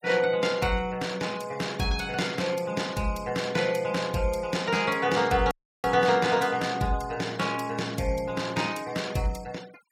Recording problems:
noise reduction artefacts; signal-to-artefact ratio 19 dB
dropout; at 5.5 s

